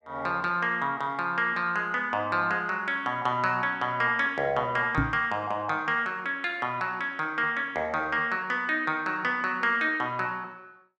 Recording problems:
microphone thump; at 5 s; peak +4 dB vs average level

